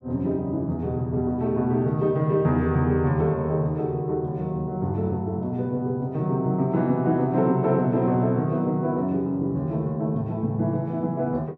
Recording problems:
none

